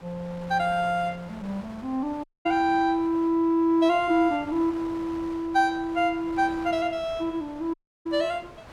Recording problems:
wind on the microphone; below 1.4 kHz, SNR 20 dB
dropout; at 2 s and at 7.5 s

